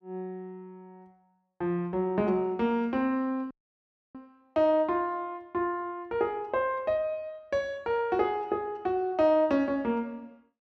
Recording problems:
audio cutting out; at 3.5 s for 0.5 s

